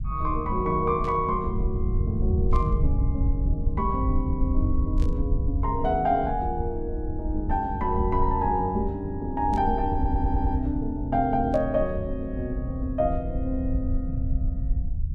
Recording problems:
rumble; below 80 Hz, SNR 2 dB
static burst; 5 times, first at 1 s; peak -14 dB vs average level
audio stuttering; at 10 s

